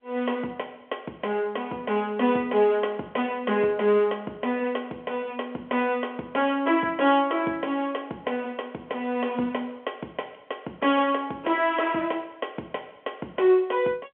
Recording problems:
telephone audio; 220 Hz to 3.4 kHz, G.711

